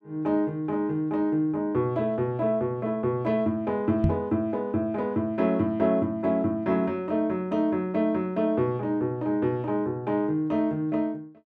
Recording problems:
microphone thump; at 4 s; peak +6 dB vs average level

